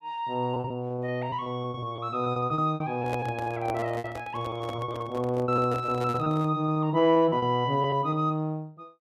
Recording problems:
packet loss; 15% of the sound replaced, filled with repeated pitch periods
microphone handling noise; from 3 to 6.5 s; peak -3 dB vs average level

